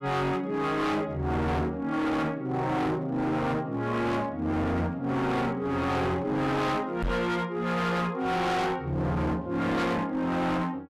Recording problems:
distorted audio; hard clipping, signal-to-distortion ratio 6 dB
microphone bump; at 7 s; peak +2 dB vs average level

